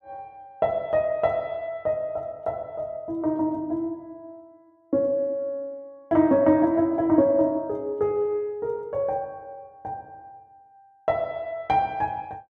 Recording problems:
none

